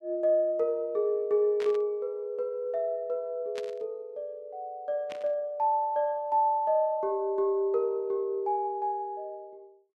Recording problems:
burst of static; at 1.5 s, at 3.5 s and at 5 s; peak -9 dB vs average level

